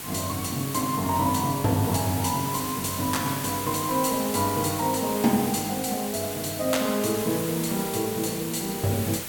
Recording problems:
hum; 50 Hz, harmonics up to 1.1 kHz, SNR 24 dB
hiss; slope -1 dB per octave, SNR 7 dB

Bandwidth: 17.5 kHz